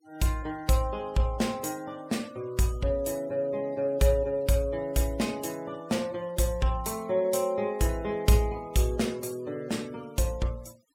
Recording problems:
denoising artefacts; signal-to-artefact ratio 24 dB

